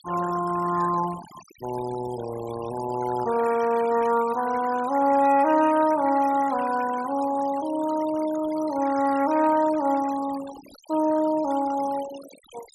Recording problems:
noise reduction artefacts; signal-to-artefact ratio 17 dB

